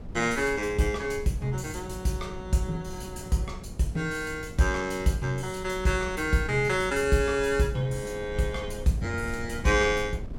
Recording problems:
wind noise; below 180 Hz, SNR 13 dB

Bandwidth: 16.5 kHz